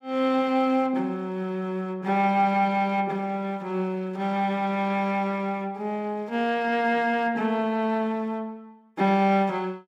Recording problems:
none

